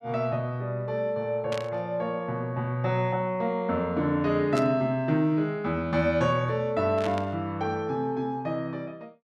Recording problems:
burst of static; at 1.5 s, at 4.5 s and at 7 s; peak -6 dB vs average level

